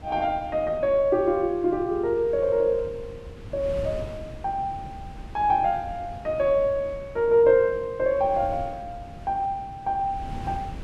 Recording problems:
wind noise; below 220 Hz, SNR 16 dB

